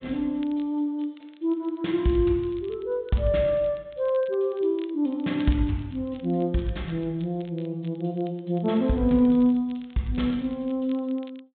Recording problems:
low-pass filter; nothing above 4 kHz
crackling; vinyl, SNR 28 dB

